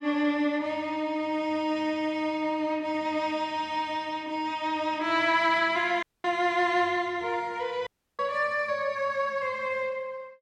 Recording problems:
dropout; at 6 s and at 8 s

